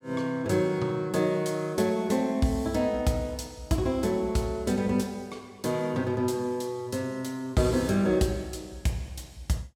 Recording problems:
none

